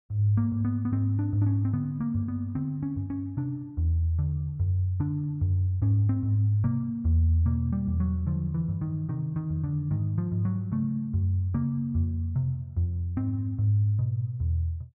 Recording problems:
none

